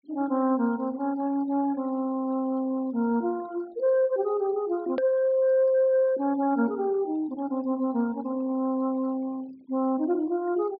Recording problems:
low-pass filter; nothing above 5 kHz
denoising artefacts; signal-to-artefact ratio 24 dB
click at an edit; at 5 s

